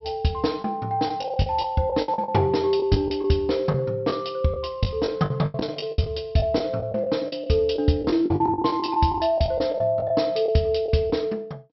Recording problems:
treble cut off; nothing above 5.6 kHz
packet loss; 13% of the sound replaced, filled with the last packet

